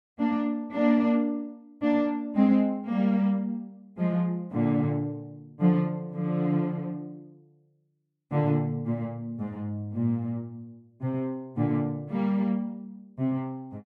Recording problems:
none

